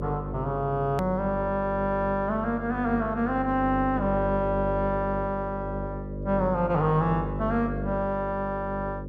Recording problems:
electrical hum; 50 Hz, harmonics up to 600 Hz, SNR 7 dB
edit click; at 1 s

